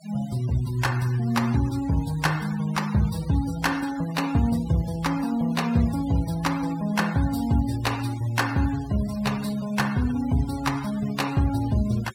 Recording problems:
noise reduction artefacts; signal-to-artefact ratio 16 dB

